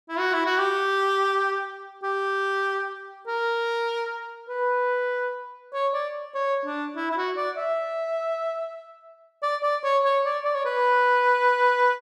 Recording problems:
none

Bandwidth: 14 kHz